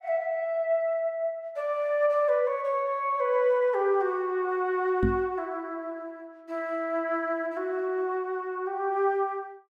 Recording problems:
knock on the microphone; at 5 s; peak +5 dB vs average level

